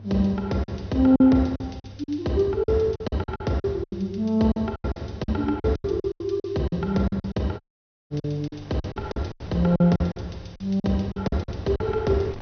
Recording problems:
low-pass filter; nothing above 6.2 kHz
hum; 50 Hz, harmonics up to 500 Hz, SNR 19 dB
wind noise; below 730 Hz, SNR 25 dB
packet loss; 15% of the sound replaced, filled with silence
audio cutting out; at 7.5 s for 0.5 s

